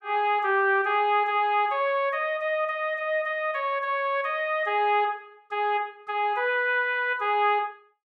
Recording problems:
none

